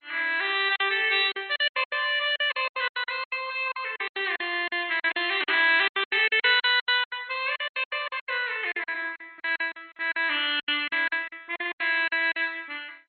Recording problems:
lossy compression; MP2, log-spectral distance 5 dB, nothing above 3.6 kHz
lost packets; 19% of the sound replaced, filled with silence

